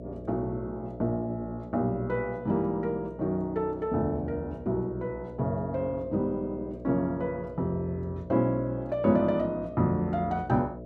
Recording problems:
hum; 60 Hz, harmonics up to 660 Hz, SNR 14 dB

